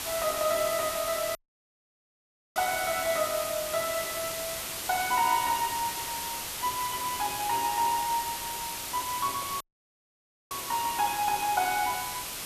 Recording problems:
background hiss; slope 0 dB per octave, SNR 4 dB
audio cutting out; at 1.5 s for 1 s and at 9.5 s for 1 s

